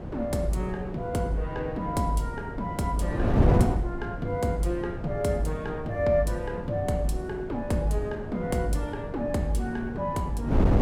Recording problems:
wind noise; below 300 Hz, SNR 3 dB

